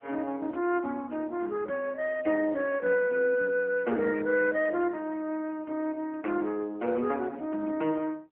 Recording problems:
phone line; 240 Hz to 3.1 kHz, AMR-NB

